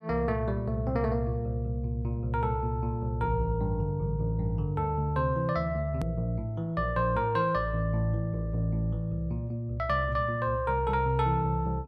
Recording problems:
hard cut with a click; at 6 s

